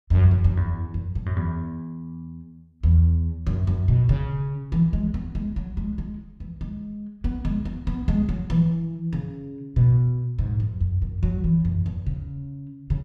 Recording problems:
none

